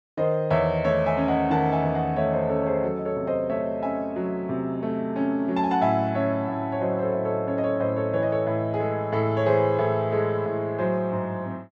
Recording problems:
none

